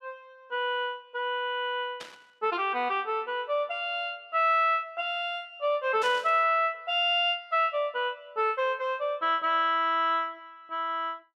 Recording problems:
static burst; at 2 s and at 6 s; peak -9 dB vs average level

